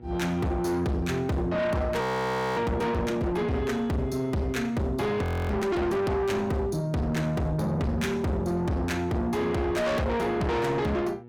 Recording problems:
distorted audio; soft clipping, signal-to-distortion ratio 6 dB
electrical hum; 60 Hz, harmonics up to 960 Hz, SNR 20 dB
audio freezing; at 2 s for 0.5 s and at 5 s

